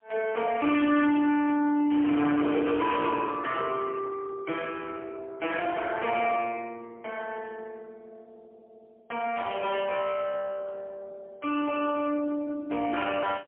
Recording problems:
telephone audio; 240 Hz to 3.4 kHz, AMR-NB, then MP3
distortion; hard clipping, signal-to-distortion ratio 8 dB

